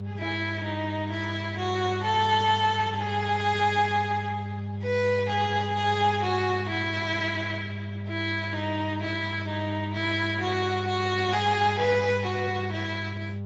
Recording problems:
lossy codec; Speex, log-spectral distance 5 dB, nothing above 7.3 kHz
hum; 50 Hz, harmonics up to 600 Hz, SNR 7 dB

